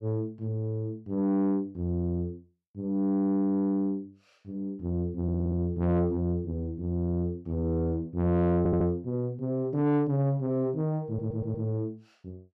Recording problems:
distortion; soft clipping, signal-to-distortion ratio 11 dB
audio stuttering; at 5 s, at 8.5 s and at 11 s

